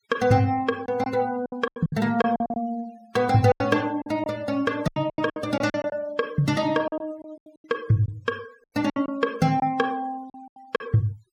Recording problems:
denoising artefacts; signal-to-artefact ratio 23 dB
lost packets; 13% of the sound replaced, filled with silence

